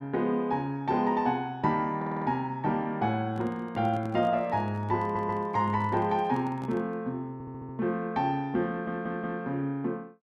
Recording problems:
audio stuttering; 4 times, first at 2 s
handling noise; from 3 to 7 s; peak -8 dB vs average level

